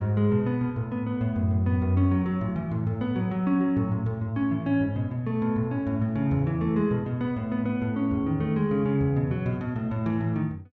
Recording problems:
none

